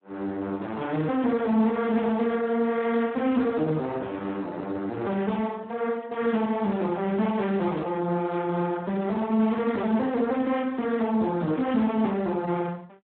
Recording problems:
telephone audio; 150 Hz to 3.9 kHz, Speex

